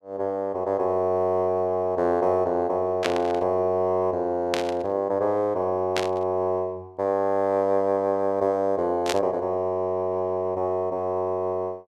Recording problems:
burst of static; 4 times, first at 3 s; peak +2 dB vs average level

